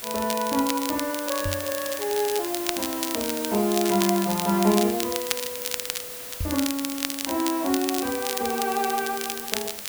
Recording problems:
background hiss; slope -1 dB per octave, SNR 7 dB
crackling; vinyl, SNR 5 dB
microphone bump; at 1.5 s and at 6.5 s; peak -1 dB vs average level

